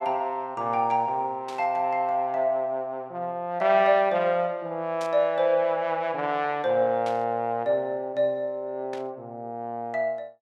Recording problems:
burst of static; 4 times, first at 1.5 s; peak -11 dB vs average level

